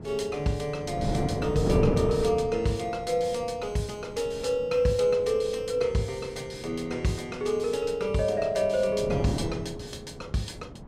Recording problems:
wind on the microphone; below 360 Hz, SNR 7 dB

